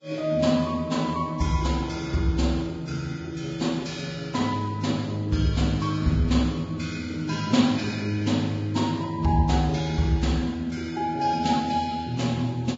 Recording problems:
lossy codec; Vorbis, log-spectral distance 3 dB, nothing above 7.3 kHz

